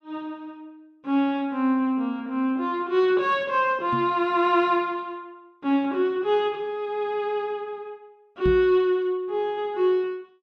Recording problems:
microphone thump; at 4 s and at 8.5 s; peak -2 dB vs average level

